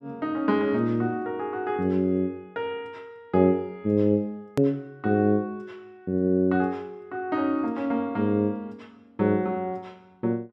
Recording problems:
edit click; at 4.5 s

